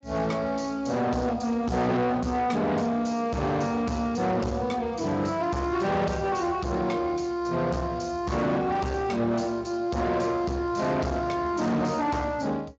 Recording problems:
lossy compression; Speex, log-spectral distance 4 dB
distorted audio; soft clipping, signal-to-distortion ratio 6 dB

